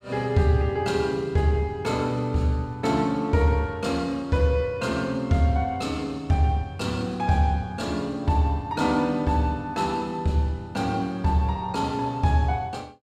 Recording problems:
none

